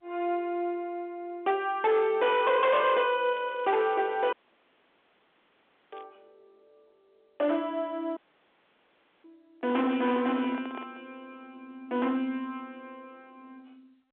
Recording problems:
phone line; 220 Hz to 3.6 kHz, G.711
distorted audio; hard clipping, signal-to-distortion ratio 10 dB
crackling; from 3 to 4.5 s and at 6 s; loose cable, SNR 29 dB
dropout; at 4.5 s for 1.5 s and at 8 s for 1 s
microphone handling noise; from 9.5 to 11 s; peak -10 dB vs average level

